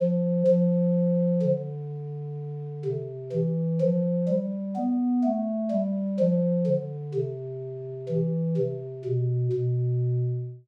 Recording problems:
none

